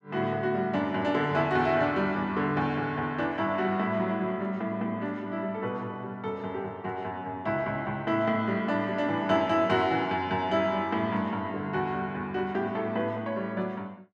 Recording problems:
none

